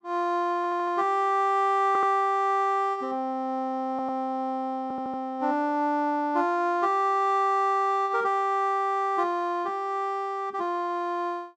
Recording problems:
stutter; 4 times, first at 0.5 s

